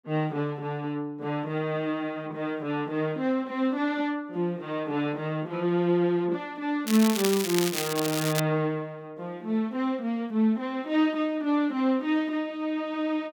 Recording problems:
crackling; from 7 to 8.5 s; loose cable, SNR 3 dB

